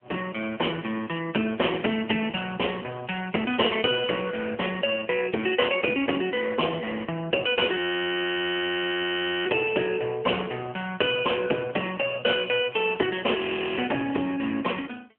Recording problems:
phone line; 240 Hz to 3.2 kHz, AMR-NB
audio freezing; at 8 s for 1.5 s and at 13 s

